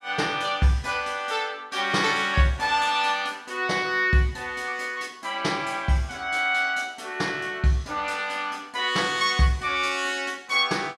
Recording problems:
none

